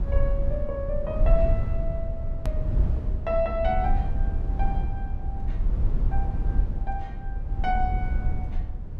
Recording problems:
low-frequency rumble; below 66 Hz, SNR -3 dB
edit click; at 2.5 s

